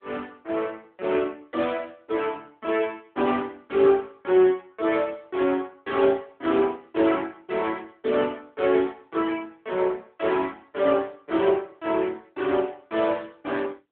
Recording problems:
phone line; 260 Hz to 3.5 kHz, AMR-NB

